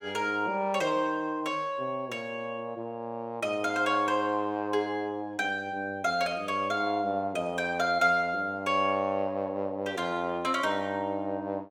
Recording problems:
none

